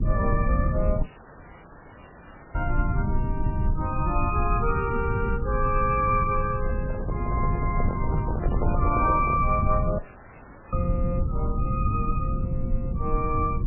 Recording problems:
lossy compression; MP3, then MP3, log-spectral distance 5 dB, nothing above 2.4 kHz
hum; 60 Hz, harmonics up to 600 Hz, SNR 14 dB
rumble; below 110 Hz, SNR 0 dB
dropout; at 1 s for 1.5 s and at 10 s for 0.5 s
handling noise; from 6.5 to 9.5 s; peak +1 dB vs average level

